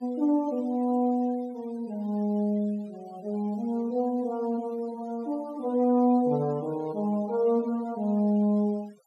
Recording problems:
denoising artefacts; signal-to-artefact ratio 28 dB

